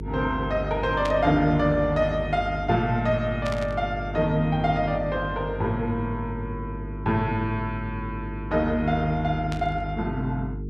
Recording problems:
electrical hum; 50 Hz, harmonics up to 450 Hz, SNR 9 dB
static burst; at 1 s, at 3.5 s and at 9.5 s; peak -5 dB vs average level

